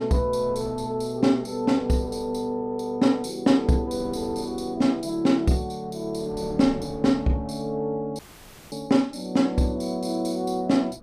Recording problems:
wind noise; below 490 Hz, SNR 21 dB
audio cutting out; at 8 s for 0.5 s

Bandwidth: 15 kHz